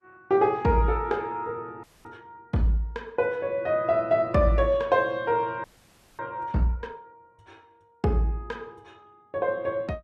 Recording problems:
codec artefacts; Opus, log-spectral distance 2 dB
frozen audio; at 2 s and at 5.5 s for 0.5 s

